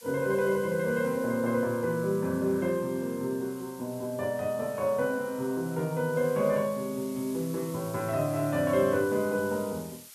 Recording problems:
hiss; slope +4 dB per octave, SNR 18 dB

